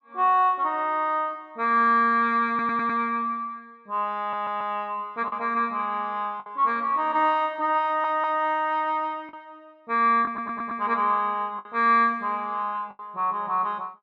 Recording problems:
lost packets; 3% of the sound replaced, filled with the last packet
stutter; 4 times, first at 2.5 s

